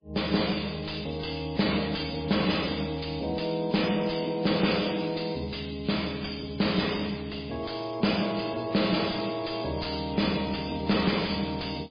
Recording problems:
lossy compression; MP3, log-spectral distance 10 dB
distortion; soft clipping, signal-to-distortion ratio 10 dB

